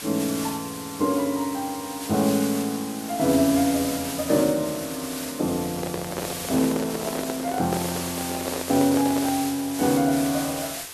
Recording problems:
hiss; slope 0 dB per octave, SNR 8 dB
microphone handling noise; from 5.5 to 9.5 s; peak 0 dB vs average level

